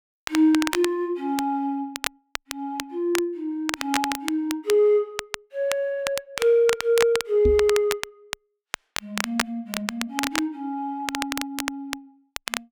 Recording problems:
crackle; vinyl, SNR 7 dB
knock on the microphone; at 7.5 s; peak +2 dB vs average level

